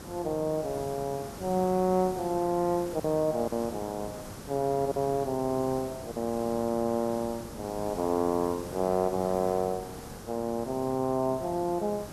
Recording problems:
hum; 50 Hz, harmonics up to 550 Hz, SNR 25 dB
background hiss; SNR 13 dB
lost packets; 1.4% of the sound replaced, filled with silence

